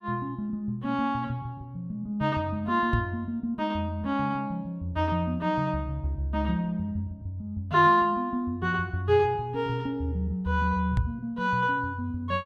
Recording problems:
knock on the microphone; at 3 s and at 11 s; peak +4 dB vs average level

